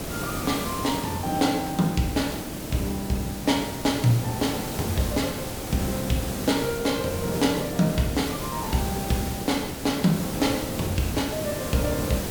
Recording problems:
hiss; SNR 5 dB

